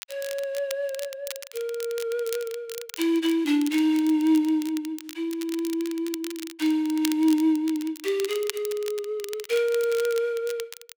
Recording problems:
crackle; vinyl, SNR 14 dB

